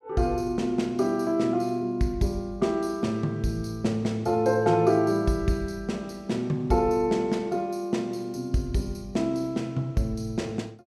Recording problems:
none

